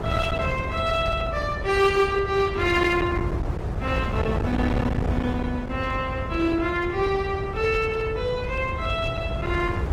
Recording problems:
codec artefacts; Opus, log-spectral distance 2 dB, nothing above 18.9 kHz
distortion; hard clipping, signal-to-distortion ratio 12 dB
rumble; below 420 Hz, SNR 6 dB

